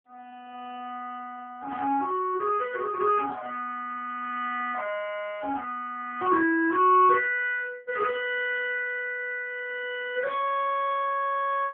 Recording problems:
phone line; 280 Hz to 3.3 kHz, AMR-NB

